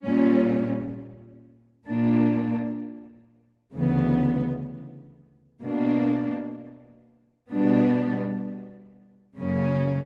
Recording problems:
lossy compression; Opus, log-spectral distance 2 dB

